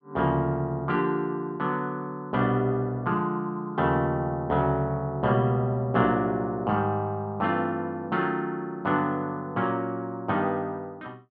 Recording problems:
none

